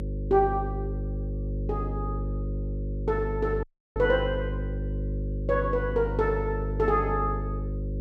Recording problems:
hum; 50 Hz, harmonics up to 550 Hz, SNR 4 dB
audio cutting out; at 3.5 s

